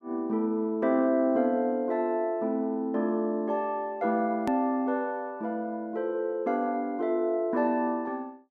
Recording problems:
click at an edit; at 4.5 s

